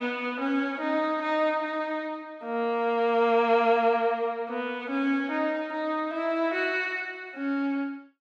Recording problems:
none

